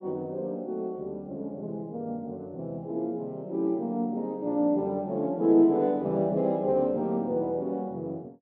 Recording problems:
none

